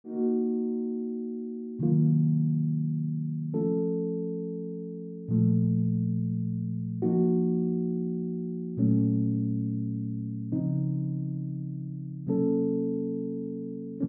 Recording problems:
low-pass filter; nothing above 5.5 kHz

